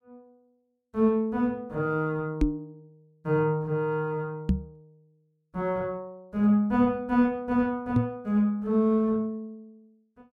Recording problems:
microphone thump; at 2.5 s, at 4.5 s and at 8 s; peak +6 dB vs average level

